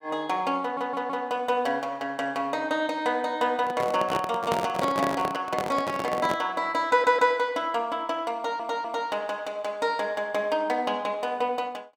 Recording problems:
audio stuttering; at 0.5 s, at 7 s and at 8.5 s
microphone handling noise; from 3.5 to 6.5 s; peak +2 dB vs average level

